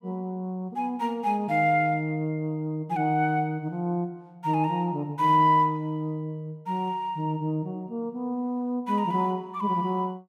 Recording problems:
none

